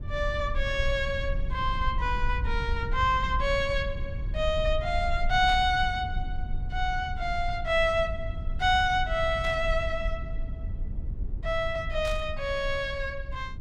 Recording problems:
low-frequency rumble; below 66 Hz, SNR 7 dB
static burst; at 5.5 s, at 9.5 s and at 12 s; peak -9 dB vs average level

